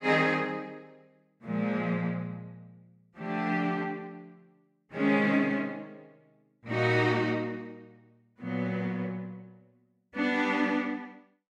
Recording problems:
none

